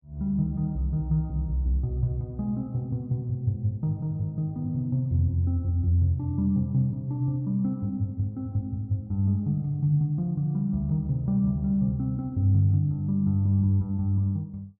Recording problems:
none

